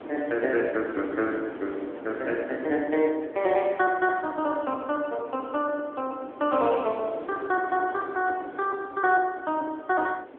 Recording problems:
telephone audio; 240 Hz to 3.3 kHz, AMR-NB
wind on the microphone; below 620 Hz, SNR 14 dB

